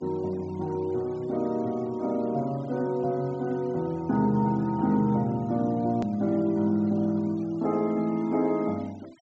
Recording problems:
treble cut off; nothing above 8 kHz
noise reduction artefacts; signal-to-artefact ratio 27 dB
click at an edit; at 6 s

